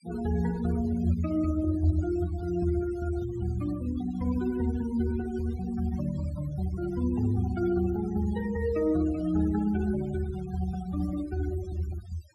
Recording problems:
noise reduction artefacts; signal-to-artefact ratio 18 dB

